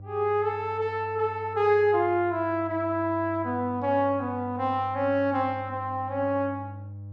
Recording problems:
hum; 50 Hz, harmonics up to 500 Hz, SNR 15 dB

